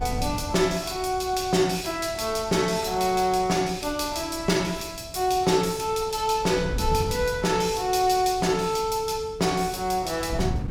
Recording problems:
wind noise; below 150 Hz, SNR 13 dB

